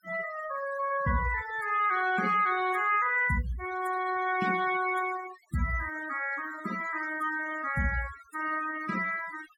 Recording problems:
denoising artefacts; signal-to-artefact ratio 13 dB

